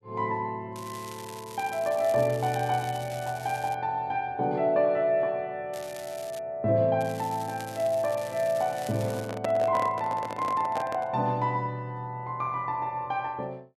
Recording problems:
crackling; from 1 to 3.5 s, at 5.5 s and from 7 to 9.5 s; loose cable, SNR 17 dB
handling noise; from 9 to 11 s; peak 0 dB vs average level

